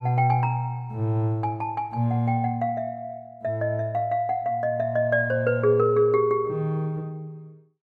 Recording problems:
none

